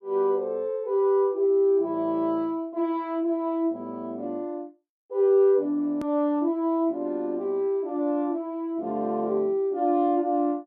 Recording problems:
edit click; at 6 s

